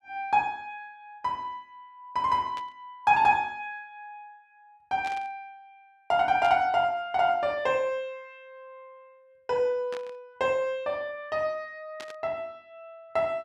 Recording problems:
static burst; 5 times, first at 2.5 s; peak -10 dB vs average level

